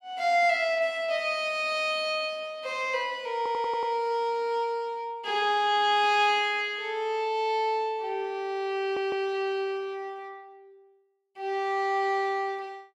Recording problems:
audio stuttering; at 3.5 s and at 9 s

